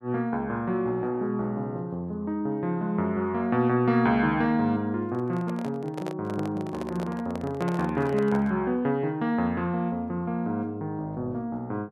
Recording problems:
handling noise; from 5 to 8.5 s; peak -4 dB vs average level

